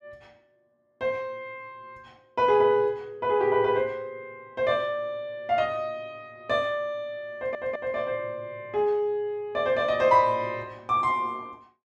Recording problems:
stutter; at 7.5 s

